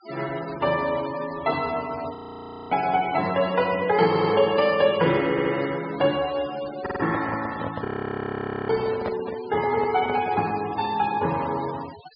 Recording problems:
treble cut off; nothing above 5.1 kHz
noise reduction artefacts; signal-to-artefact ratio 16 dB
audio freezing; at 2 s for 0.5 s and at 8 s for 1 s
audio stuttering; at 4 s, at 5.5 s and at 7 s
microphone handling noise; from 7 to 10 s; peak -2 dB vs average level

